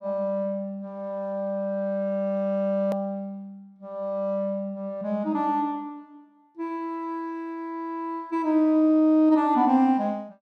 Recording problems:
hard cut with a click; at 3 s

